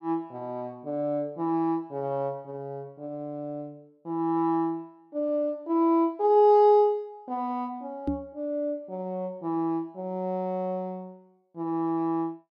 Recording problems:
microphone bump; at 8 s; peak +3 dB vs average level

